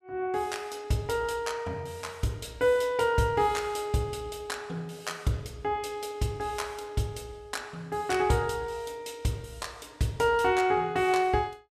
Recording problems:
none

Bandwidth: 14.5 kHz